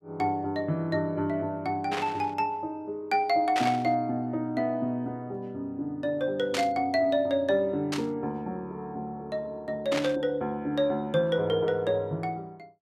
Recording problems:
static burst; 5 times, first at 2 s; peak +1 dB vs average level

